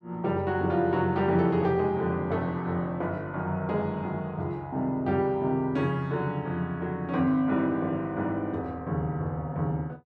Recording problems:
none

